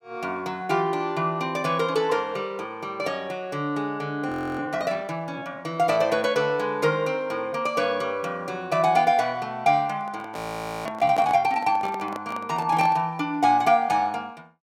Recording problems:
frozen audio; at 4.5 s and at 10 s
microphone handling noise; from 10 to 13 s; peak -3 dB vs average level

